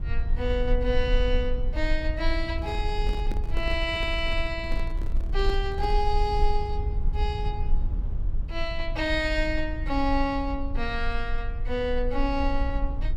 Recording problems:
rumble; below 50 Hz, strongest tone 20 Hz, SNR 2 dB
microphone handling noise; from 2.5 to 6 s; peak -4 dB vs average level

